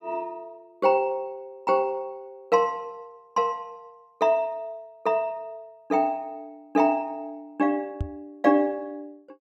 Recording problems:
microphone thump; at 8 s; peak 0 dB vs average level

